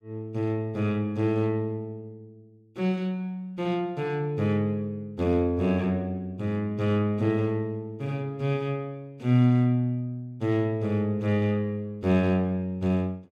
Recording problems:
none

